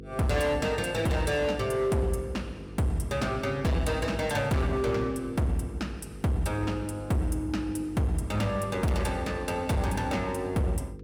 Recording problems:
distortion; hard clipping, signal-to-distortion ratio 11 dB
hum; 50 Hz, harmonics up to 500 Hz, SNR 15 dB

